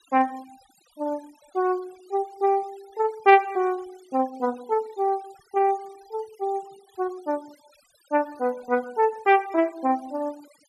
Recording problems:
denoising artefacts; signal-to-artefact ratio 26 dB

